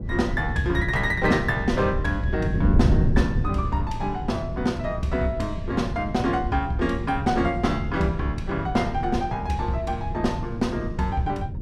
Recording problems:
wind on the microphone; below 160 Hz, SNR 3 dB

